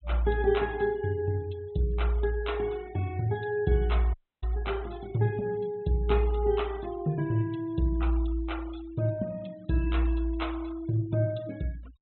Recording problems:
treble cut off; nothing above 4 kHz
denoising artefacts; signal-to-artefact ratio 22 dB
audio cutting out; at 4 s

